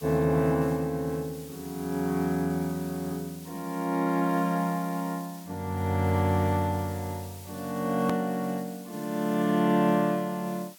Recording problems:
hiss; slope +2 dB per octave, SNR 19 dB
edit click; at 8 s

